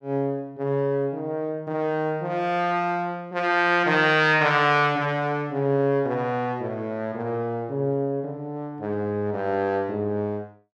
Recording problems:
none

